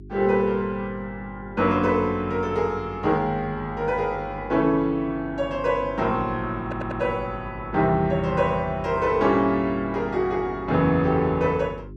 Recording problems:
electrical hum; 50 Hz, harmonics up to 400 Hz, SNR 17 dB
stutter; at 6.5 s

